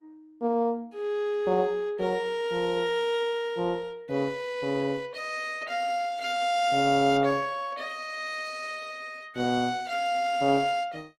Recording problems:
codec artefacts; Opus, log-spectral distance 2 dB, nothing above 20.1 kHz

